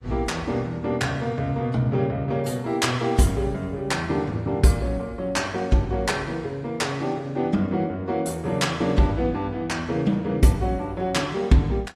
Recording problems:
codec artefacts; AAC, log-spectral distance 2 dB, nothing above 14.3 kHz

